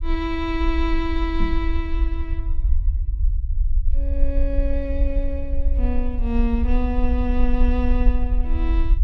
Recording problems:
rumble; below 52 Hz, SNR -3 dB
microphone bump; at 1.5 s; peak 0 dB vs average level

